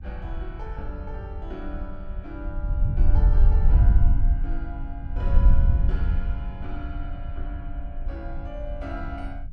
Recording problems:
low-frequency rumble; below 84 Hz, SNR 8 dB
wind on the microphone; below 64 Hz, SNR -14 dB

